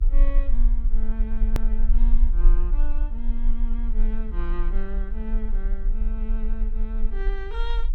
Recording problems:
electrical hum; 60 Hz, harmonics up to 300 Hz, SNR 16 dB
low-frequency rumble; below 36 Hz, strongest tone 22 Hz, SNR -11 dB
hard cut with a click; at 1.5 s

